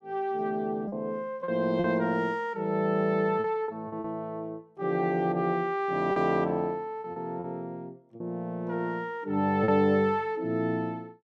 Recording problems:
packet loss; 5% of the sound replaced, filled with repeated pitch periods

